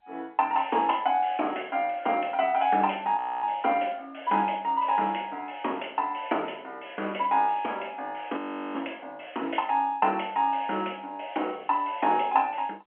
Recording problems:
telephone audio; 260 Hz to 3.2 kHz, G.711
frozen audio; at 3 s and at 8.5 s

